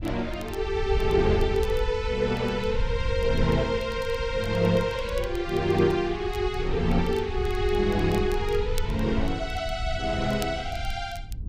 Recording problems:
low-frequency rumble; below 78 Hz, SNR 8 dB
crackling; vinyl, SNR 23 dB

